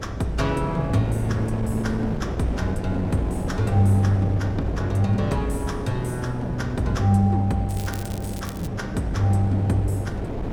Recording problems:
hum; 60 Hz, harmonics up to 660 Hz, SNR 18 dB
wind on the microphone; below 410 Hz, SNR 6 dB
crackle; at 7.5 s; loose cable, SNR 17 dB

